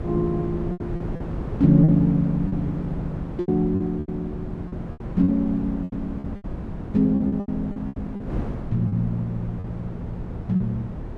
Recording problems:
wind on the microphone; below 270 Hz, SNR 9 dB
packet loss; 11% of the sound replaced, filled with repeated pitch periods

